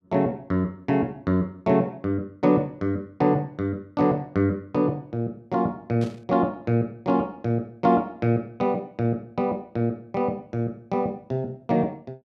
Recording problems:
static burst; at 6 s; peak -14 dB vs average level

